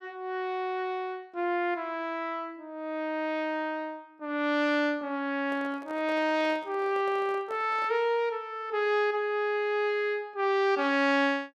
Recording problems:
handling noise; from 5.5 to 8 s; peak -12 dB vs average level

